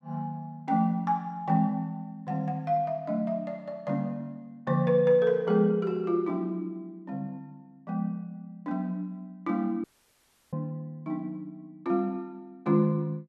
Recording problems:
audio cutting out; at 10 s for 0.5 s

